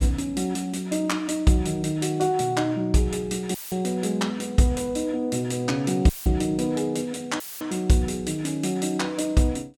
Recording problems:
audio cutting out; at 3.5 s, at 6 s and at 7.5 s; filled with static

